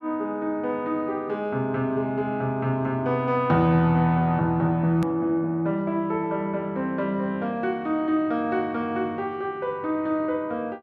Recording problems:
click at an edit; at 5 s

